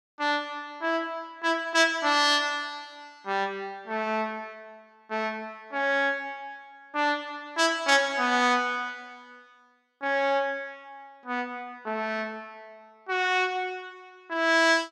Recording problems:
none

